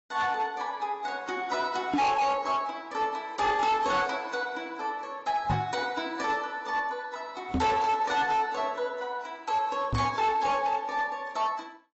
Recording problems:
lossy compression; AAC, log-spectral distance 3 dB, nothing above 7.6 kHz
distorted audio; hard clipping, signal-to-distortion ratio 10 dB
knock on the microphone; 4 times, first at 2 s; peak +5 dB vs average level

